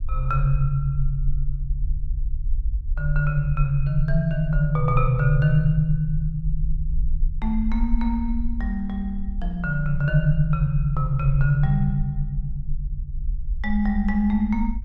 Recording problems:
low-frequency rumble; below 48 Hz, SNR 6 dB

